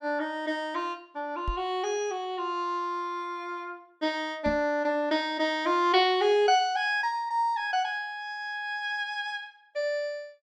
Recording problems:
microphone bump; at 1.5 s and at 4.5 s; peak -1 dB vs average level

